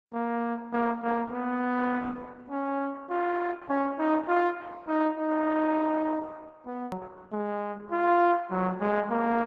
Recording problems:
codec artefacts; Opus, log-spectral distance 3 dB
edit click; at 7 s

